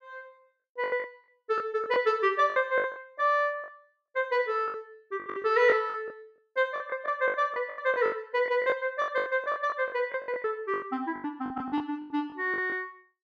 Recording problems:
packet loss; 17% of the sound replaced, filled with the last packet

